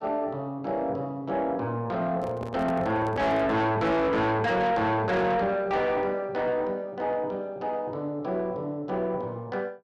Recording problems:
distortion; soft clipping, signal-to-distortion ratio 7 dB
microphone handling noise; from 2 to 3.5 s; peak -3 dB vs average level

